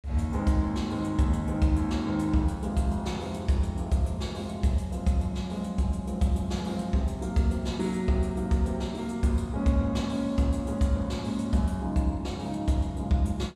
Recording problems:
none

